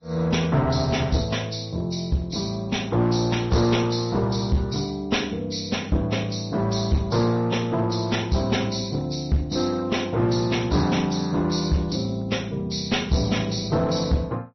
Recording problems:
low-pass filter; nothing above 5.8 kHz
lossy compression; Vorbis, log-spectral distance 4 dB
distorted audio; hard clipping, uneven, signal-to-distortion ratio 10 dB

